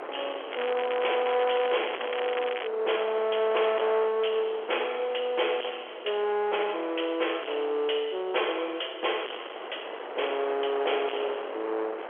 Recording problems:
telephone audio; 340 Hz to 3.3 kHz, G.711
distortion; soft clipping, signal-to-distortion ratio 7 dB
wind on the microphone; below 1.3 kHz, SNR 12 dB
crackling; from 0.5 to 2.5 s; loose cable, SNR 9 dB

